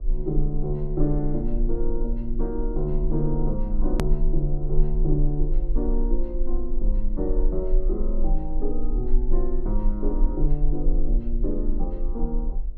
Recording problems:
hum; 60 Hz, harmonics up to 1.1 kHz, SNR 27 dB
low-frequency rumble; below 34 Hz, strongest tone 22 Hz, SNR -1 dB
hard cut with a click; at 4 s

